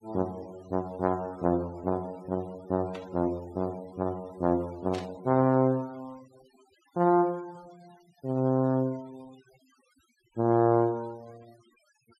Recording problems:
denoising artefacts; signal-to-artefact ratio 27 dB
burst of static; at 3 s and at 5 s; peak -10 dB vs average level

